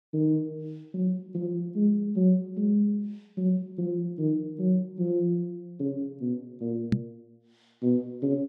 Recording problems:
microphone bump; at 7 s; peak +7 dB vs average level

